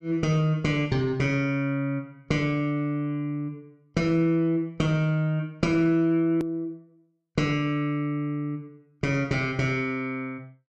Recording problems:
click at an edit; at 6.5 s

